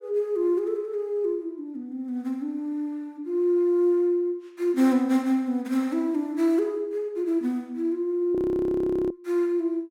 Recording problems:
audio freezing; at 8.5 s for 1 s

